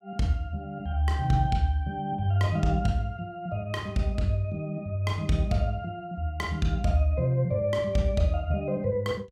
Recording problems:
none

